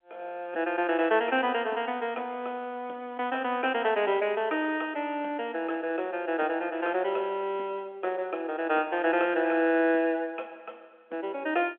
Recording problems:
telephone audio; 260 Hz to 3.5 kHz, G.711

